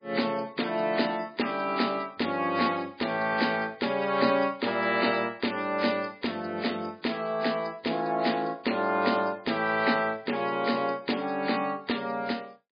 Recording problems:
lossy compression; MP3, log-spectral distance 6 dB, nothing above 4.2 kHz

